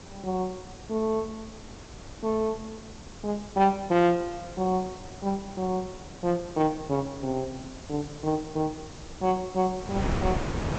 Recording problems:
low-pass filter; nothing above 8 kHz
hiss; slope +1 dB per octave, SNR 20 dB
wind noise; below 540 Hz, SNR 11 dB

